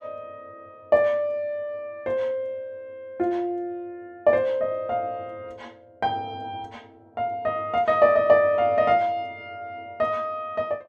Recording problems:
none

